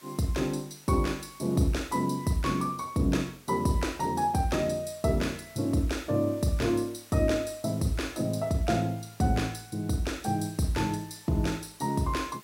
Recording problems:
background hiss; slope -1 dB per octave, SNR 23 dB

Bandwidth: 16 kHz